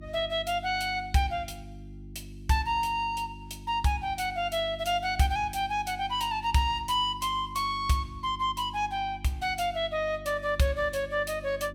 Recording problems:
electrical hum; 50 Hz, harmonics up to 350 Hz, SNR 16 dB

